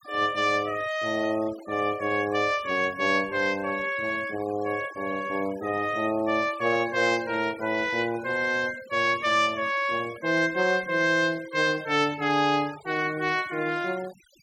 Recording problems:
noise reduction artefacts; signal-to-artefact ratio 20 dB

